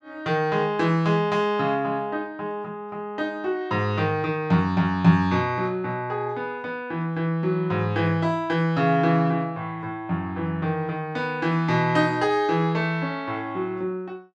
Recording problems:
none

